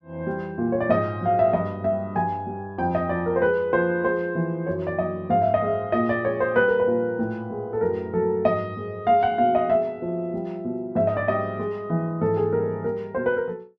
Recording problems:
none

